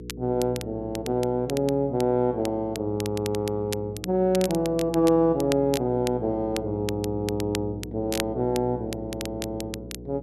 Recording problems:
hum; 60 Hz, harmonics up to 480 Hz, SNR 14 dB
crackling; vinyl, SNR 13 dB

